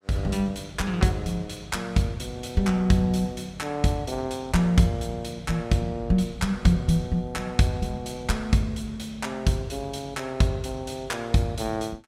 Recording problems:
none

